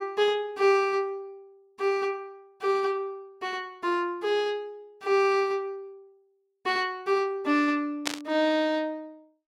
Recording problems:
static burst; at 8 s; peak +3 dB vs average level

